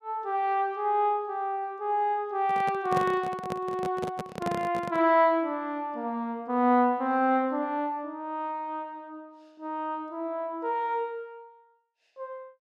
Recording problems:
microphone handling noise; from 2.5 to 5 s; peak 0 dB vs average level

